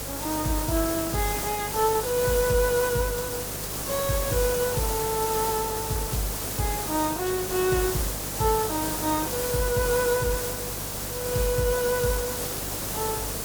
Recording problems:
lossy codec; Opus, log-spectral distance 2 dB
hum; 50 Hz, harmonics up to 500 Hz, SNR 15 dB
background hiss; SNR 2 dB

